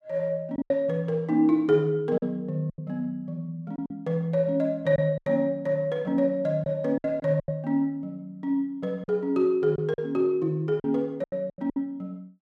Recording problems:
lost packets; 8% of the sound replaced, filled with silence

